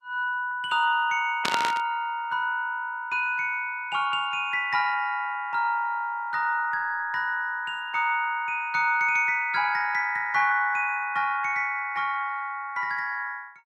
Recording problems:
lossy compression; Opus, log-spectral distance 2 dB
static burst; at 1.5 s; peak +3 dB vs average level

